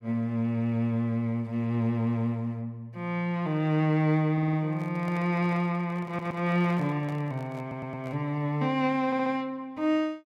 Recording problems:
audio stuttering; 4 times, first at 4.5 s
microphone handling noise; from 4.5 to 8 s; peak -11 dB vs average level

